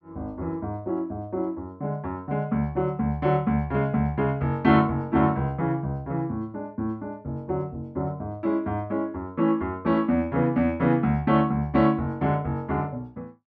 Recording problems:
none

